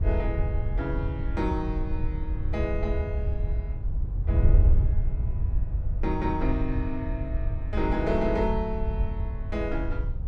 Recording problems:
wind noise; below 78 Hz, SNR -3 dB

